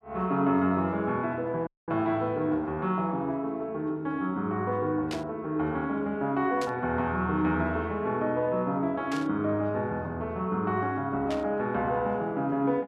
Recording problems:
audio cutting out; at 1.5 s
burst of static; 4 times, first at 5 s; peak -5 dB vs average level

